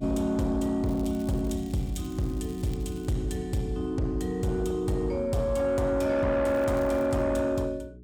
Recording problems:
distortion; soft clipping, signal-to-distortion ratio 10 dB
hum; 60 Hz, harmonics up to 420 Hz, SNR 22 dB
crackling; from 1 to 3 s and at 6.5 s; loose cable, SNR 26 dB

